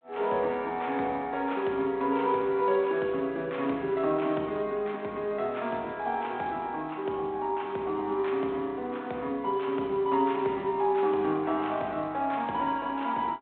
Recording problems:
telephone audio; 170 Hz to 3.7 kHz, G.726

